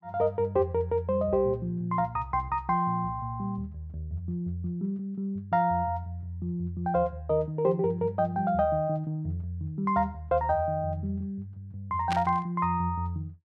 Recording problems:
burst of static; at 12 s; peak -1 dB vs average level

